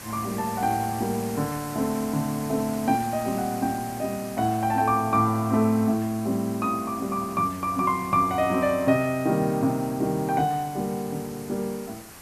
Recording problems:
background hiss; SNR 15 dB

